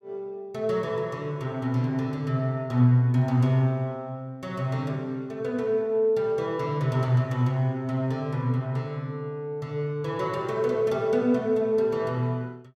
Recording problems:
none

